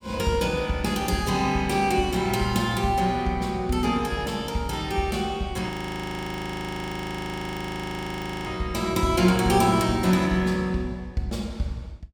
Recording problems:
audio freezing; at 5.5 s for 3 s

